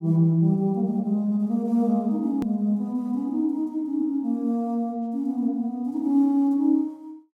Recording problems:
hard cut with a click; at 2.5 s

